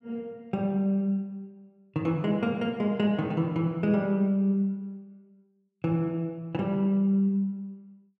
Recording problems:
none

